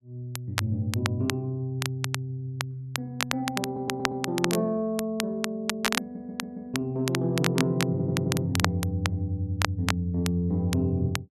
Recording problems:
crackling; vinyl, SNR 4 dB
audio stuttering; at 3.5 s, at 6 s and at 8 s

